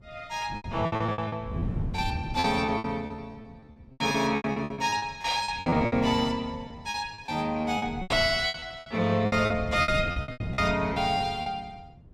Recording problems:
wind noise; below 190 Hz, SNR 10 dB
lost packets; 18% of the sound replaced, filled with repeated pitch periods

